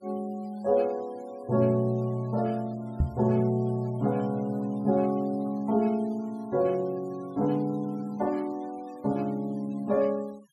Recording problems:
noise reduction artefacts; signal-to-artefact ratio 26 dB
microphone bump; at 3 s; peak +7 dB vs average level

